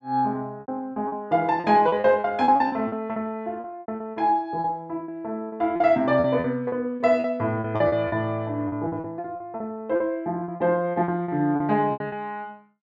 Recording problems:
packet loss; 15% of the sound replaced, filled with repeated pitch periods

